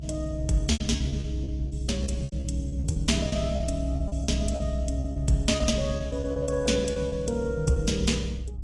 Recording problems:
codec artefacts; AAC, log-spectral distance 2 dB, nothing above 10.7 kHz
electrical hum; 50 Hz, harmonics up to 700 Hz, SNR 22 dB
rumble; below 72 Hz, strongest tone 62 Hz, SNR 4 dB
packet loss; 15% of the sound replaced, filled with repeated pitch periods

